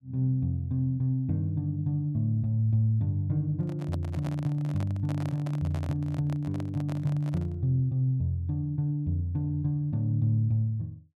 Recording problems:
microphone handling noise; from 3.5 to 7.5 s; peak -6 dB vs average level

